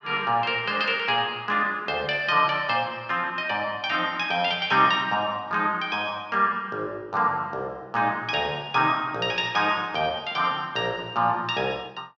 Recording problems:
none

